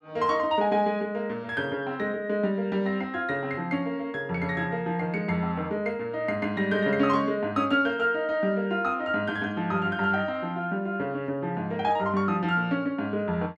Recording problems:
none

